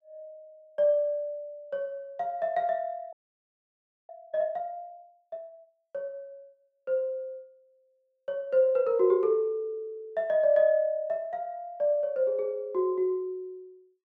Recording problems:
frozen audio; at 3 s for 1 s

